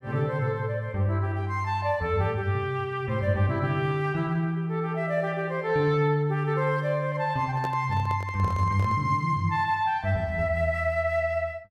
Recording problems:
handling noise; from 7.5 to 9 s; peak -5 dB vs average level

